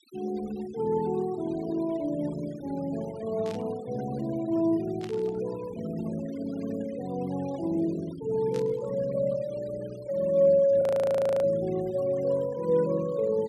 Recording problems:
denoising artefacts; signal-to-artefact ratio 21 dB
static burst; at 3.5 s, at 5 s and at 8.5 s; peak -12 dB vs average level
audio freezing; at 11 s for 0.5 s

